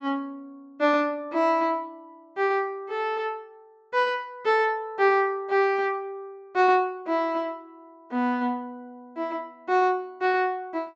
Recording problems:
low-pass filter; nothing above 7.8 kHz

